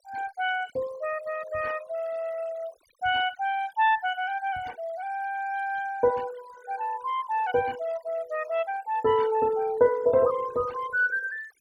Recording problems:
denoising artefacts; signal-to-artefact ratio 21 dB

